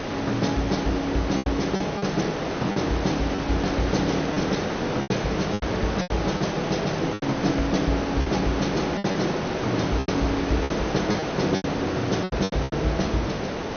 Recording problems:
codec artefacts; G.722, then MP2, log-spectral distance 10 dB, nothing above 6.3 kHz
background hiss; slope -6 dB per octave, SNR 2 dB
lost packets; 9% of the sound replaced, filled with repeated pitch periods

